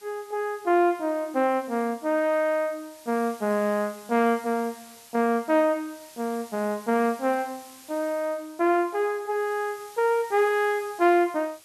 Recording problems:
hiss; slope +1 dB per octave, SNR 22 dB

